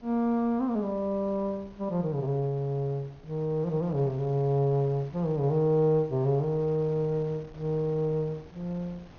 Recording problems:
treble cut off; nothing above 6.6 kHz
wind on the microphone; below 680 Hz, SNR 23 dB

